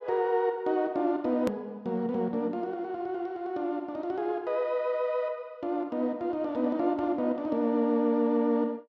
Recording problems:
hard cut with a click; at 1.5 s

